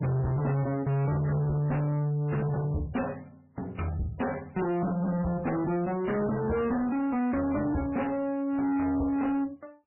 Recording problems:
codec artefacts; MP3, then MP3, log-spectral distance 3 dB, nothing above 2.8 kHz
distortion; soft clipping, signal-to-distortion ratio 8 dB

